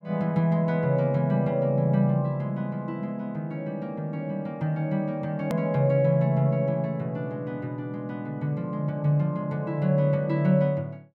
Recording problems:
hard cut with a click; at 5.5 s

